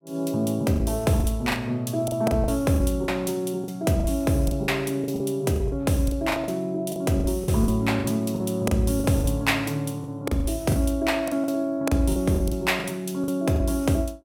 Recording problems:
lost packets; 12% of the sound replaced, filled with the last packet

